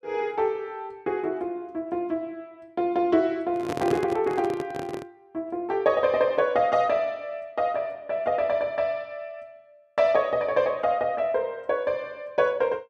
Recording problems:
handling noise; from 3.5 to 5 s; peak 0 dB vs average level

